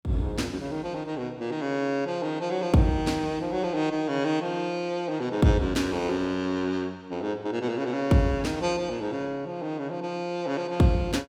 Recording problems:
none

